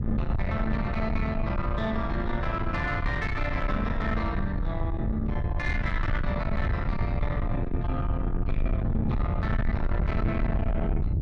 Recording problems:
distortion; soft clipping, signal-to-distortion ratio 7 dB
rumble; below 120 Hz, SNR 0 dB

